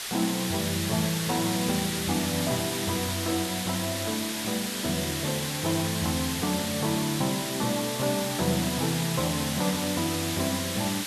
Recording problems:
hiss; SNR 2 dB
static burst; at 2 s; peak -11 dB vs average level

